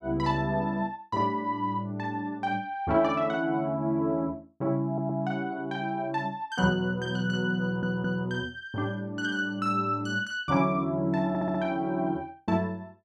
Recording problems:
stutter; at 5 s, at 7.5 s and at 11 s

